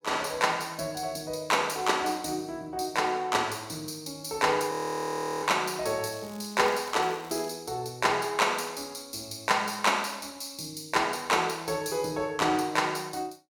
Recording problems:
frozen audio; at 4.5 s for 0.5 s
crackle; from 6 to 7.5 s; loose cable, SNR 22 dB

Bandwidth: 17.5 kHz